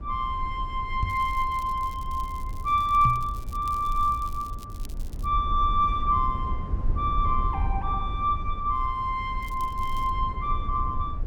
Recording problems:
low-frequency rumble; below 72 Hz, SNR 7 dB
microphone bump; at 1 s and at 3 s; peak +3 dB vs average level
crackling; from 1 to 5.5 s and at 9.5 s; loose cable, SNR 24 dB

